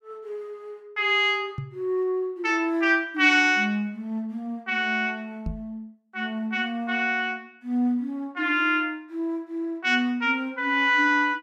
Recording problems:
microphone bump; at 1.5 s and at 5.5 s; peak -4 dB vs average level

